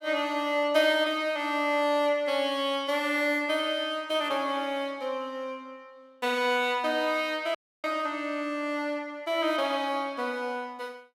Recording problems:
dropout; at 7.5 s

